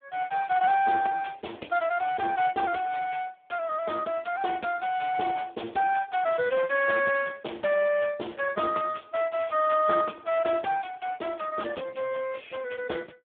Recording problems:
phone line; 260 Hz to 2.9 kHz, Speex

